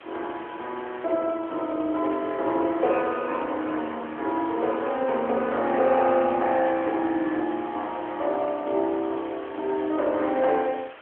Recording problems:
telephone audio; 260 Hz to 3.6 kHz, AMR-NB
background hiss; SNR 19 dB

